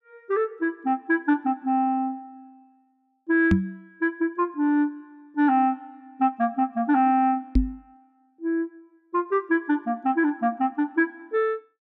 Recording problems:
microphone thump; at 3.5 s and at 7.5 s; peak +7 dB vs average level

